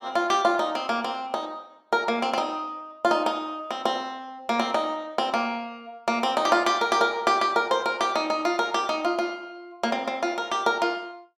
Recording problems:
none

